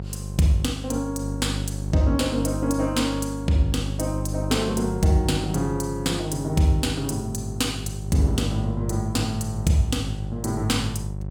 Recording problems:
hum; 50 Hz, harmonics up to 600 Hz, SNR 6 dB

